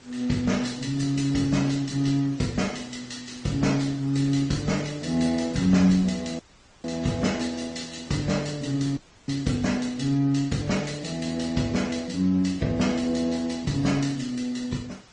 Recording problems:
codec artefacts; MP3, then Opus, log-spectral distance 5 dB, nothing above 9.5 kHz
background hiss; slope -2 dB per octave, SNR 25 dB
dropout; at 6.5 s and at 9 s

